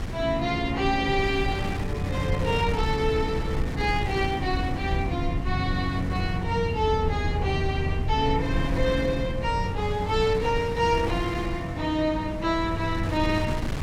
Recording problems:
electrical hum; 60 Hz, harmonics up to 1.1 kHz, SNR 13 dB
rumble; below 110 Hz, SNR 9 dB
wind on the microphone; below 260 Hz, SNR 9 dB

